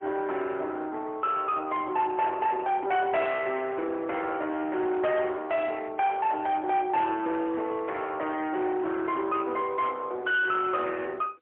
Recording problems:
telephone audio; 280 Hz to 3.3 kHz, AMR-NB, then MP3
distorted audio; soft clipping, signal-to-distortion ratio 10 dB

